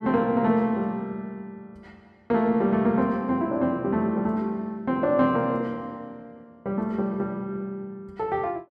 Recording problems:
none

